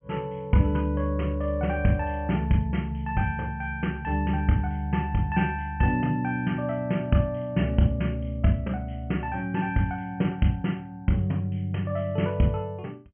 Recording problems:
treble cut off; nothing above 3.2 kHz

